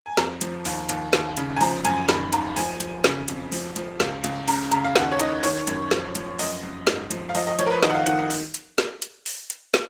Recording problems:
codec artefacts; Opus, log-spectral distance 5 dB, nothing above 18.5 kHz

